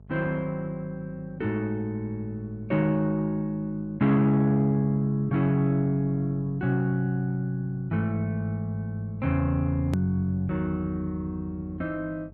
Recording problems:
electrical hum; 50 Hz, harmonics up to 650 Hz, SNR 21 dB
hard cut with a click; at 10 s

